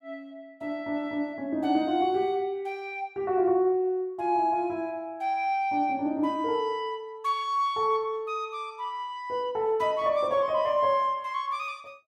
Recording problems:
none

